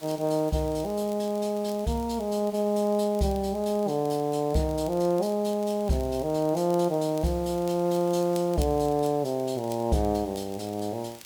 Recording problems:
background hiss; slope -1 dB per octave, SNR 22 dB
crackle; vinyl, SNR 25 dB

